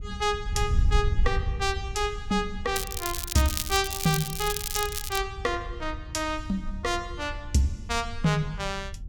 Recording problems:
wind on the microphone; below 74 Hz, SNR 6 dB
crackling; from 3 to 5 s; loose cable, SNR 3 dB

